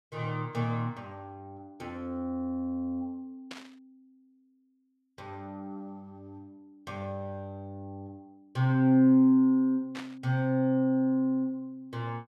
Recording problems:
static burst; at 3.5 s and at 10 s; peak -10 dB vs average level

